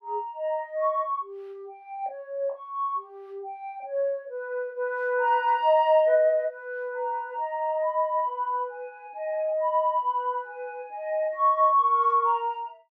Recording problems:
none

